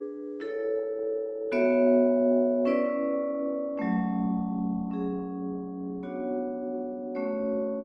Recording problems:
lossy compression; Opus, log-spectral distance 2 dB

